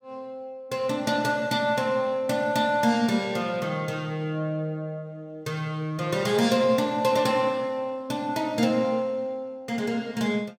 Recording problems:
none

